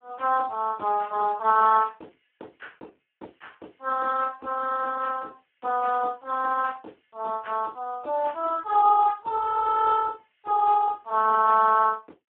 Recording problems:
phone line; 280 Hz to 3.3 kHz, Speex

